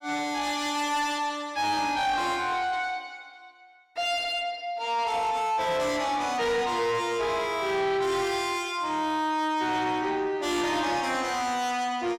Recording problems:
distorted audio; soft clipping, signal-to-distortion ratio 10 dB

